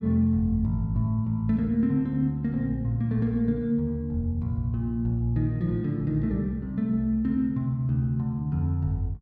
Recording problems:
none

